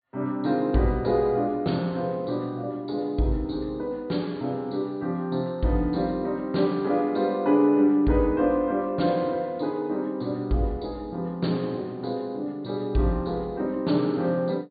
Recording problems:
low-pass filter; nothing above 4.6 kHz

